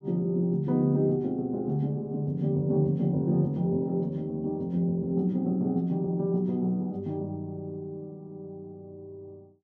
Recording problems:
none

